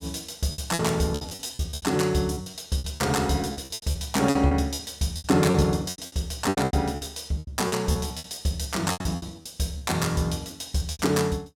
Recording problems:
packet loss; 18% of the sound replaced, filled with repeated pitch periods

